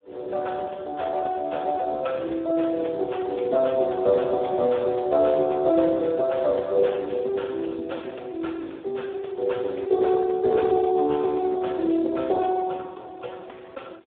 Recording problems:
phone line; 280 Hz to 3.8 kHz, Speex

